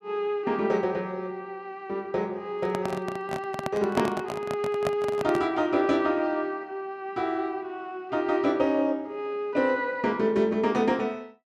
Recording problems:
handling noise; from 2.5 to 5.5 s; peak +2 dB vs average level

